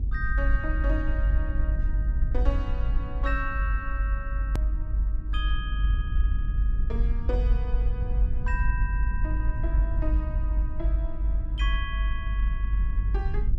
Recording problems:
hum; 60 Hz, harmonics up to 300 Hz, SNR 17 dB
low-frequency rumble; below 52 Hz, strongest tone 48 Hz, SNR -9 dB
hard cut with a click; at 4.5 s

